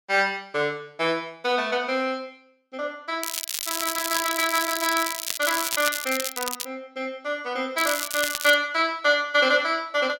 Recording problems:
crackle; from 3 to 6.5 s and at 8 s; loose cable, SNR 4 dB

